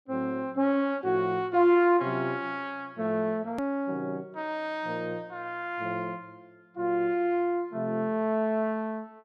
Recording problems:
edit click; at 3.5 s

